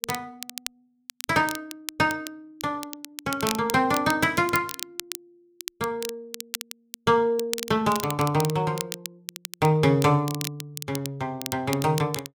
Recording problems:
crackle; vinyl, SNR 11 dB

